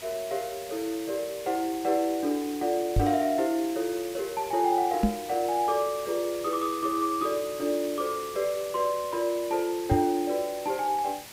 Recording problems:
background hiss; slope 0 dB per octave, SNR 14 dB
microphone thump; at 3 s, at 5 s and at 10 s; peak +7 dB vs average level

